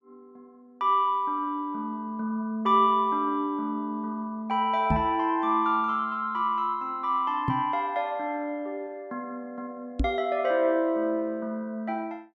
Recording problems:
microphone thump; at 5 s, at 7.5 s and at 10 s; peak +4 dB vs average level

